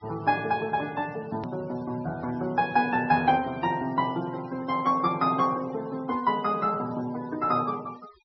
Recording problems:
treble cut off; nothing above 5.7 kHz
denoising artefacts; signal-to-artefact ratio 21 dB
edit click; at 1.5 s

